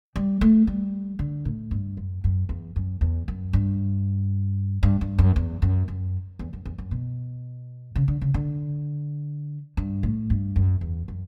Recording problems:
none

